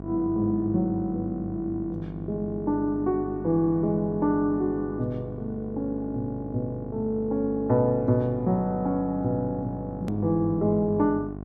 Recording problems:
hum; 50 Hz, harmonics up to 1.1 kHz, SNR 11 dB
hard cut with a click; at 10 s

